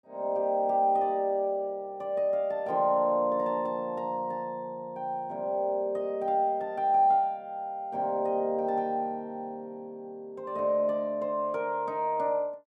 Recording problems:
none

